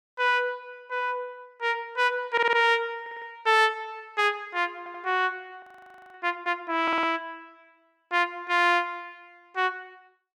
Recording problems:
stutter; 4 times, first at 2.5 s
audio freezing; at 5.5 s for 0.5 s

